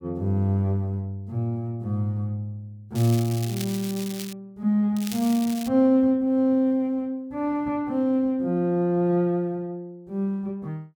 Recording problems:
crackling; from 3 to 4.5 s and at 5 s; loose cable, SNR 13 dB

